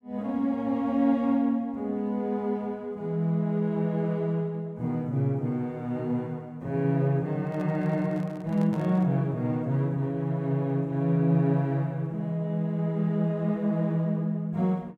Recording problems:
microphone handling noise; from 7.5 to 9 s; peak -11 dB vs average level

